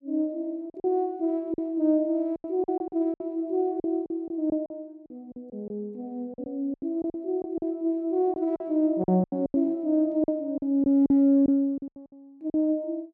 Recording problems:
packet loss; 12% of the sound replaced, filled with silence

